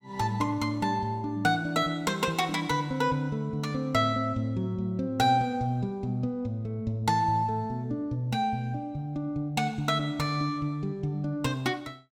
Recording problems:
none

